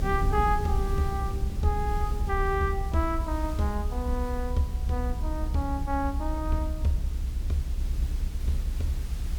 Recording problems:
background hiss; slope -1 dB per octave, SNR 17 dB
low-frequency rumble; below 68 Hz, strongest tone 32 Hz, SNR 0 dB

